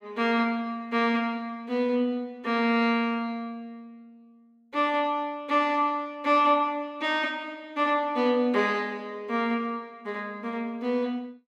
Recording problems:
none

